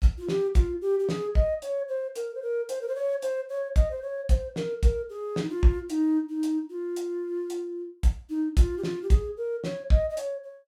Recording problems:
none

